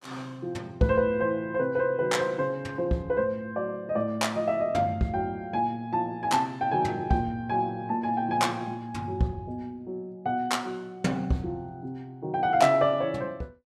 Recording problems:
none

